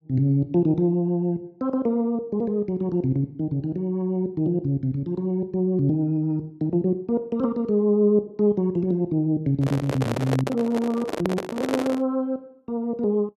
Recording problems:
microphone handling noise; from 9.5 to 12 s; peak +3 dB vs average level

